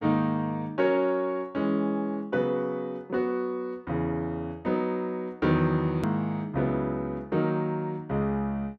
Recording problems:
hard cut with a click; at 6 s

